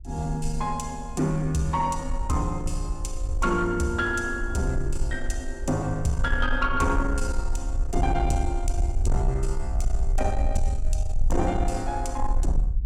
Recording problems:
distorted audio; soft clipping, signal-to-distortion ratio 11 dB
low-frequency rumble; below 54 Hz, strongest tone 20 Hz, SNR 3 dB

